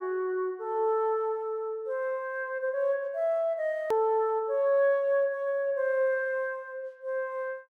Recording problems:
hard cut with a click; at 4 s

